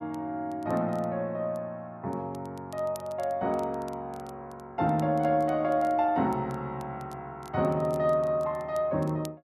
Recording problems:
crackle; vinyl, SNR 27 dB

